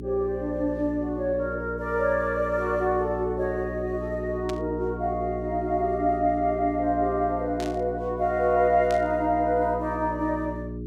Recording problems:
electrical hum; 60 Hz, harmonics up to 420 Hz, SNR 10 dB
burst of static; at 4.5 s, at 7.5 s and at 9 s; peak -8 dB vs average level

